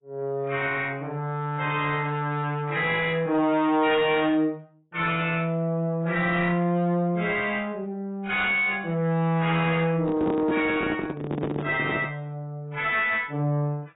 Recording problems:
lossy codec; AAC, log-spectral distance 2 dB, nothing above 3.7 kHz
distorted audio; soft clipping, signal-to-distortion ratio 10 dB
handling noise; from 10 to 12 s; peak 0 dB vs average level

